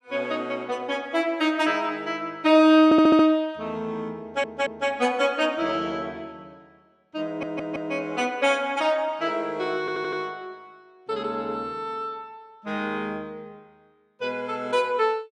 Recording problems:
stutter; 4 times, first at 3 s

